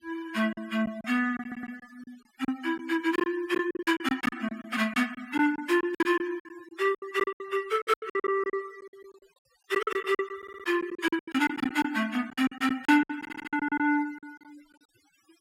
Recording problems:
denoising artefacts; signal-to-artefact ratio 21 dB
packet loss; 16% of the sound replaced, filled with silence
stutter; at 1.5 s, at 10 s and at 13 s

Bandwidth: 16 kHz